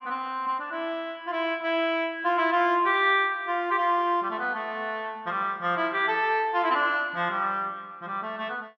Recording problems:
none

